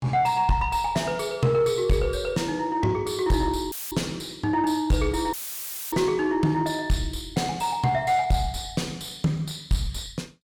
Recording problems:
distorted audio; soft clipping, signal-to-distortion ratio 10 dB
dropout; at 3.5 s and at 5.5 s for 0.5 s; filled with static

